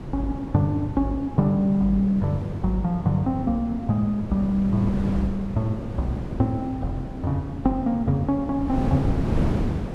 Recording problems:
wind noise; below 300 Hz, SNR 7 dB

